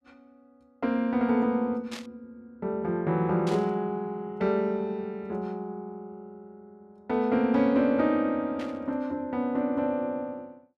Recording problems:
static burst; at 2 s, at 3.5 s and at 8.5 s; peak -8 dB vs average level

